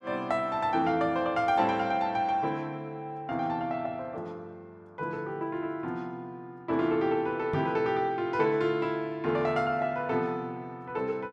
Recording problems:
microphone thump; at 7.5 s; peak -1 dB vs average level

